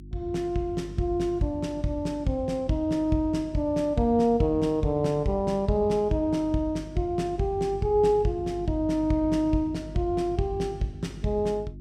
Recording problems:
electrical hum; 50 Hz, harmonics up to 350 Hz, SNR 16 dB

